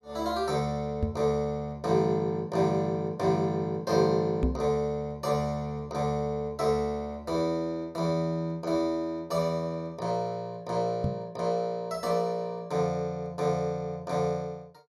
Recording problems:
microphone bump; at 1 s, at 4.5 s and at 11 s; peak +5 dB vs average level

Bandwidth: 15 kHz